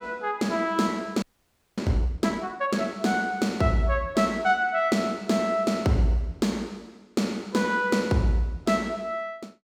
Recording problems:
audio freezing; at 1 s for 0.5 s

